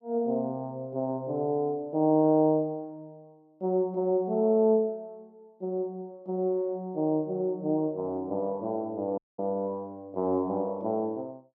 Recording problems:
dropout; at 9 s

